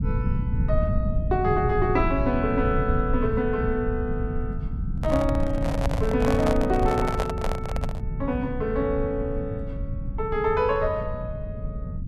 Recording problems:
low-frequency rumble; below 130 Hz, SNR 3 dB
handling noise; from 5 to 8 s; peak +2 dB vs average level

